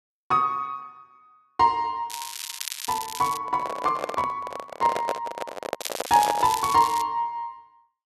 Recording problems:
crackle; from 2 to 3.5 s and from 6 to 7 s; loose cable, SNR 9 dB
microphone handling noise; from 3.5 to 6.5 s; peak +1 dB vs average level

